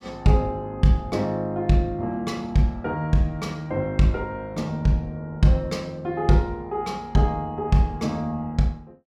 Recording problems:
none

